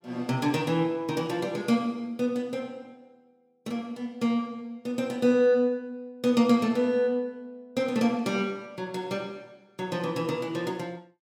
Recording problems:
none

